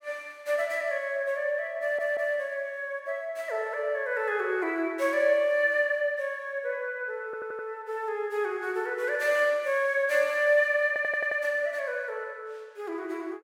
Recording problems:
stutter; at 2 s, at 7.5 s and at 11 s

